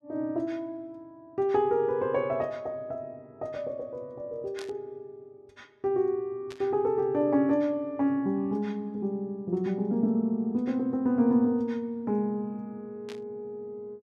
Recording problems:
static burst; at 4.5 s, at 6.5 s and at 13 s; peak -10 dB vs average level

